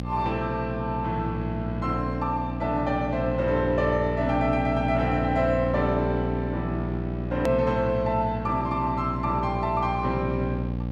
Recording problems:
hum; 60 Hz, harmonics up to 840 Hz, SNR 4 dB
click at an edit; at 7.5 s

